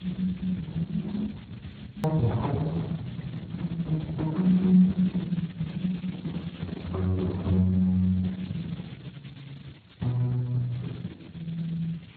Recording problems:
lossy compression; Opus, then Speex, log-spectral distance 10 dB, nothing above 18.3 kHz
hiss; SNR 23 dB
rumble; below 150 Hz, SNR 19 dB
click at an edit; at 2 s

